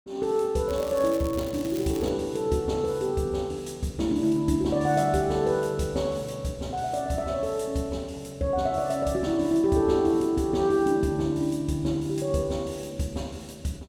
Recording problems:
crackle; from 0.5 to 2 s; loose cable, SNR 17 dB

